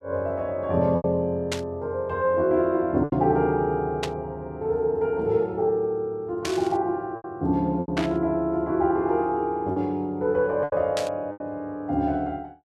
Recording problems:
packet loss; 4% of the sound replaced, filled with repeated pitch periods
static burst; 5 times, first at 1.5 s; peak 0 dB vs average level

